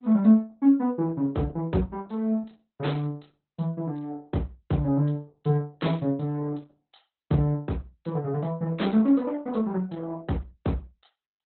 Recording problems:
lossy codec; Opus, log-spectral distance 3 dB, nothing above 4 kHz

